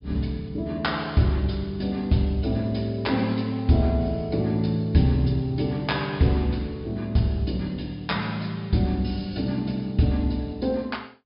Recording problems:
treble cut off; nothing above 5.5 kHz

